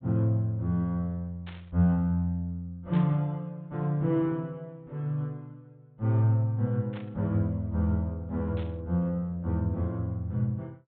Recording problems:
treble missing; nothing above 4 kHz
static burst; 4 times, first at 1.5 s; peak -13 dB vs average level

